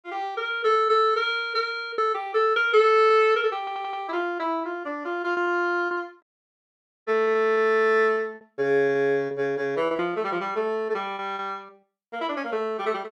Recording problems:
packet loss; 6% of the sound replaced, filled with repeated pitch periods
stutter; at 3.5 s
audio cutting out; at 6 s for 1 s

